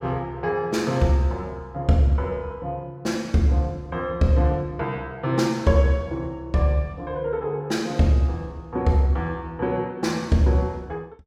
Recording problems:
none

